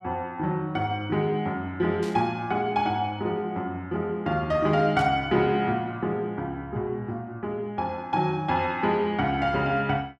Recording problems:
burst of static; at 2 s and at 5 s; peak -11 dB vs average level

